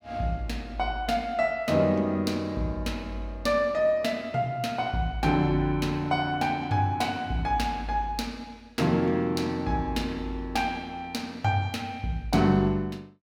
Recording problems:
none

